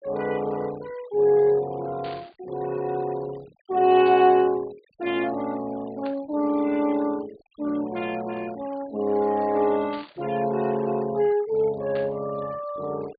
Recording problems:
low-pass filter; nothing above 4.7 kHz
noise reduction artefacts; signal-to-artefact ratio 23 dB
static burst; 5 times, first at 2 s; peak -12 dB vs average level

